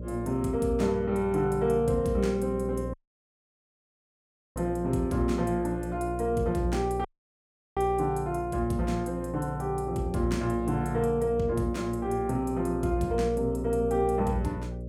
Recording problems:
hum; 60 Hz, harmonics up to 600 Hz, SNR 9 dB
audio cutting out; at 3 s for 1.5 s and at 7 s for 0.5 s

